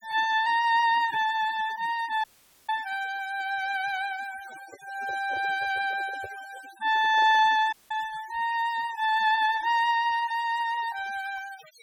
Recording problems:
noise reduction artefacts; signal-to-artefact ratio 20 dB
audio cutting out; at 2 s and at 7.5 s
handling noise; from 4.5 to 7.5 s; peak -12 dB vs average level

